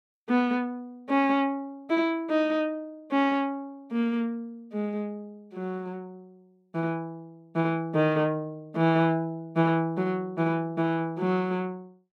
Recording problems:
none

